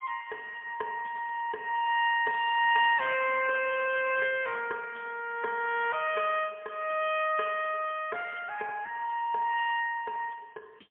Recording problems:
phone line; 240 Hz to 3.6 kHz, AMR-NB, then MP3

